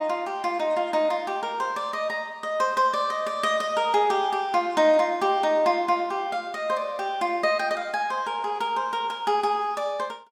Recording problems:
none

